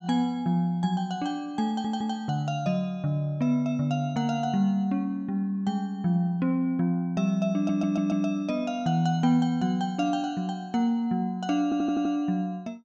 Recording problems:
audio stuttering; at 1.5 s, at 7.5 s and at 12 s

